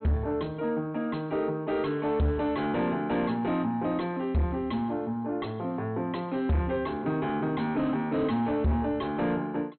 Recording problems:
treble cut off; nothing above 4.2 kHz
distortion; soft clipping, signal-to-distortion ratio 8 dB

